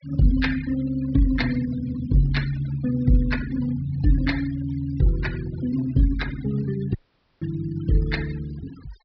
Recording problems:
treble missing; nothing above 5.5 kHz
denoising artefacts; signal-to-artefact ratio 17 dB
dropout; at 7 s

